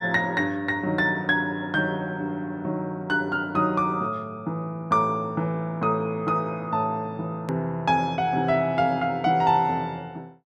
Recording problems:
hard cut with a click; at 7.5 s

